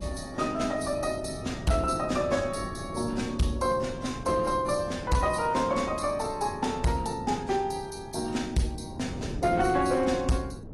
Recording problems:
codec artefacts; AAC, log-spectral distance 4 dB, nothing above 11.3 kHz
distortion; hard clipping, uneven, signal-to-distortion ratio 12 dB
wind on the microphone; below 290 Hz, SNR 13 dB

